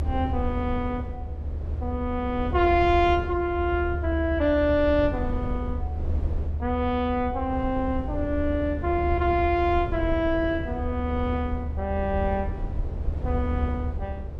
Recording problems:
rumble; below 82 Hz, SNR 5 dB

